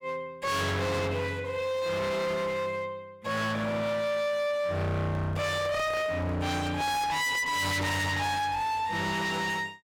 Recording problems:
distorted audio; hard clipping, uneven, signal-to-distortion ratio 5 dB
microphone handling noise; from 5 to 7.5 s; peak -7 dB vs average level

